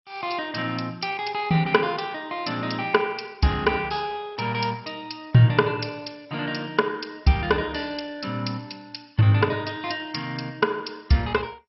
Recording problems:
codec artefacts; MP2, log-spectral distance 6 dB, nothing above 5.5 kHz

